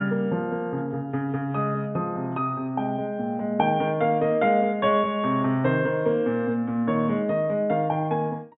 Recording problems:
treble missing; nothing above 4 kHz

